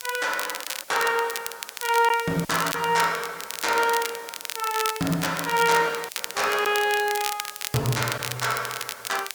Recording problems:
background hiss; SNR 19 dB
crackling; vinyl, SNR 8 dB
packet loss; 3% of the sound replaced, filled with silence

